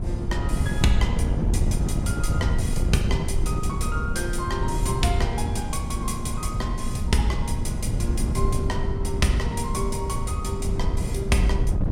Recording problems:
wind on the microphone; below 130 Hz, SNR -2 dB

